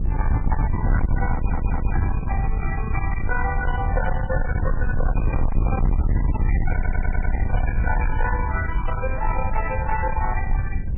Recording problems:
codec artefacts; MP3, log-spectral distance 2 dB
distorted audio; soft clipping, signal-to-distortion ratio 6 dB
rumble; below 90 Hz, SNR -4 dB
stutter; at 1.5 s and at 6.5 s

